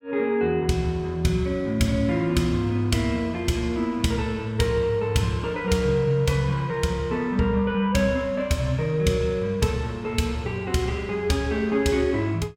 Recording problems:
none

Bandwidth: 17.5 kHz